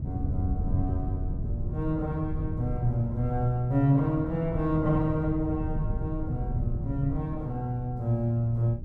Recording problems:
wind on the microphone; below 120 Hz, SNR 5 dB

